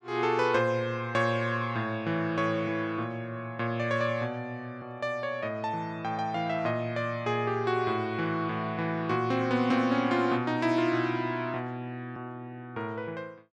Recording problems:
none

